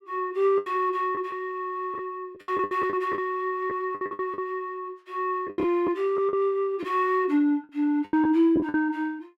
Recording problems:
packet loss; 11% of the sound replaced, filled with the last packet

